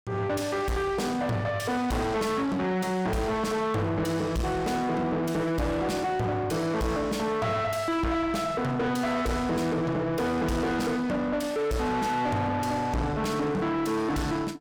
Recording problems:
distorted audio; soft clipping, signal-to-distortion ratio 6 dB

